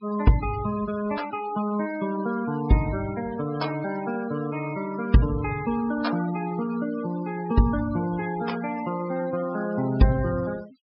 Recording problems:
treble missing; nothing above 5.2 kHz
noise reduction artefacts; signal-to-artefact ratio 15 dB

